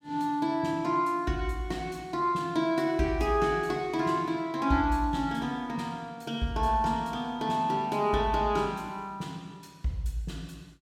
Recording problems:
none

